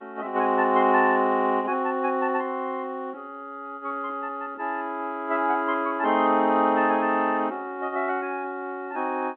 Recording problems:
telephone audio; 170 Hz to 3.3 kHz, G.711

